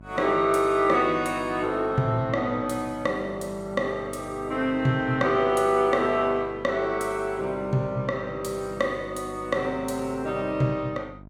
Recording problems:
electrical hum; 50 Hz, harmonics up to 1 kHz, SNR 20 dB

